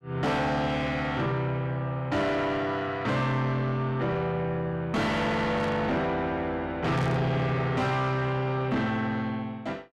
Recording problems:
distorted audio; soft clipping, signal-to-distortion ratio 8 dB
static burst; at 5.5 s and at 7 s; peak -14 dB vs average level

